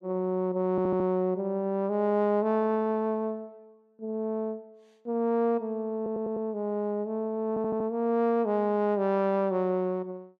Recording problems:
stutter; at 0.5 s, at 6 s and at 7.5 s

